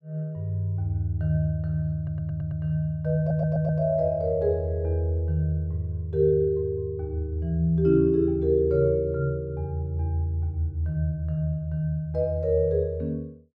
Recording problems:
audio stuttering; at 2 s and at 3 s

